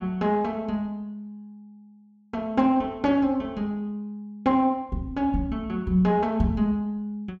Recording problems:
none

